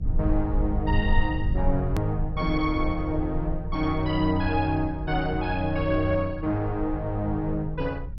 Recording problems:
lossy codec; MP2, log-spectral distance 2 dB, nothing above 16.6 kHz
rumble; below 72 Hz, SNR 5 dB
click at an edit; at 2 s

